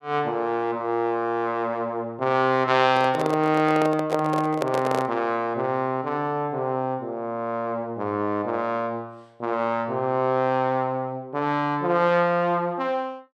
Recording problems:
microphone handling noise; from 3 to 5 s; peak +3 dB vs average level

